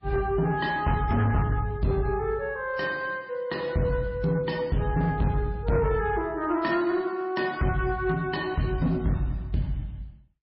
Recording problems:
lossy codec; MP3, log-spectral distance 2 dB, nothing above 5.2 kHz
distorted audio; soft clipping, signal-to-distortion ratio 12 dB

